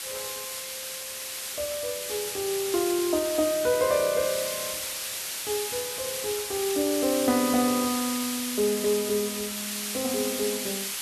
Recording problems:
background hiss; slope +3 dB per octave, SNR 3 dB

